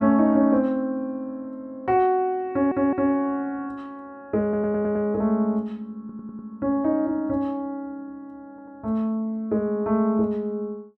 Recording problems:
audio stuttering; 4 times, first at 2.5 s

